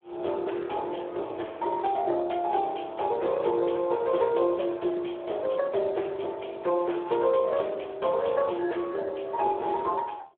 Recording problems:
telephone audio; 300 Hz to 3.4 kHz, Speex

